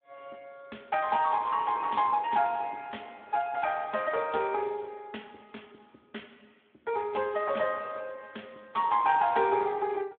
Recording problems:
phone line; 300 Hz to 3.2 kHz, Speex

